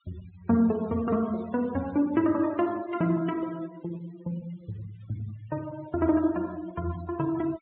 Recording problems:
treble missing; nothing above 4 kHz
noise reduction artefacts; signal-to-artefact ratio 21 dB

